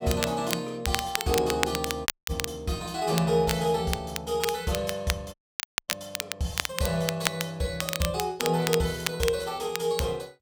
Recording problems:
crackling; vinyl, SNR 4 dB
audio cutting out; at 2 s and at 5.5 s for 0.5 s

